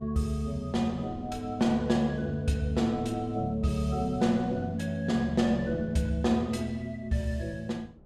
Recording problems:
wind noise; below 260 Hz, SNR 22 dB

